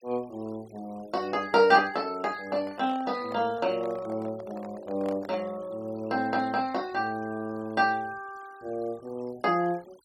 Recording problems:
noise reduction artefacts; signal-to-artefact ratio 24 dB
handling noise; from 2.5 to 5.5 s; peak -9 dB vs average level

